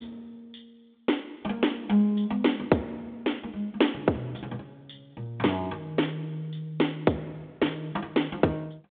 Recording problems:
phone line; 170 Hz to 3.6 kHz, G.726

